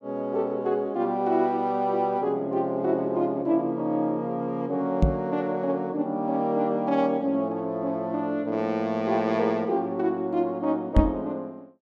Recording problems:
microphone thump; at 5 s and at 11 s; peak +8 dB vs average level

